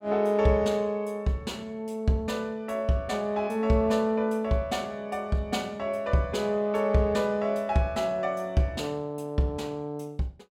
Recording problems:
none

